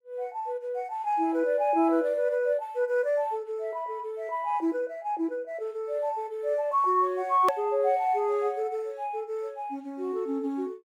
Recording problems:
edit click; at 7.5 s

